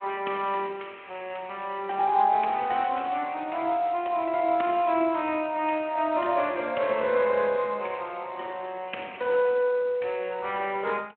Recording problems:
telephone audio; 240 Hz to 3.1 kHz, Speex

